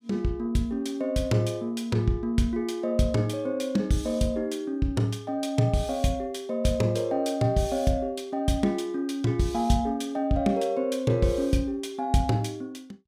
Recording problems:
none

